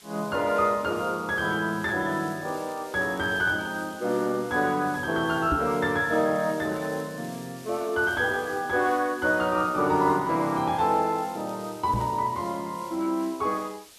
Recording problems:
hiss; SNR 21 dB
crackle; from 2.5 to 4 s, from 6.5 to 8.5 s and from 11 to 12 s; loose cable, SNR 29 dB
knock on the microphone; at 5.5 s and at 12 s; peak +1 dB vs average level

